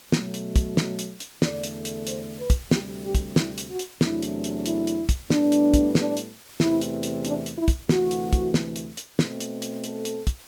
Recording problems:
hiss; slope 0 dB per octave, SNR 21 dB

